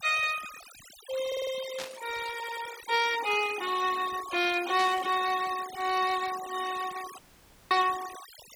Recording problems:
noise reduction artefacts; signal-to-artefact ratio 13 dB
audio stuttering; at 1.5 s and at 2.5 s
burst of static; at 2 s and at 5 s; peak -4 dB vs average level
dropout; at 7 s for 0.5 s

